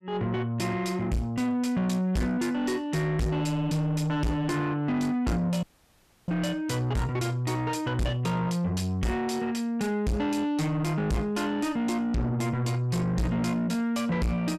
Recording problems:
distorted audio; soft clipping, signal-to-distortion ratio 5 dB
dropout; at 5.5 s for 0.5 s

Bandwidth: 14.5 kHz